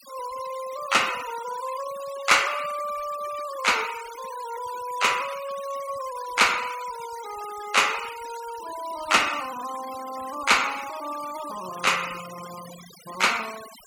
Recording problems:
noise reduction artefacts; signal-to-artefact ratio 14 dB

